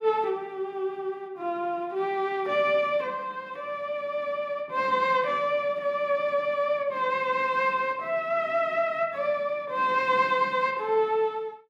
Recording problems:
none

